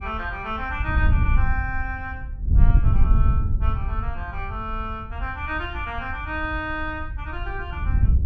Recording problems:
wind noise; below 82 Hz, SNR -5 dB

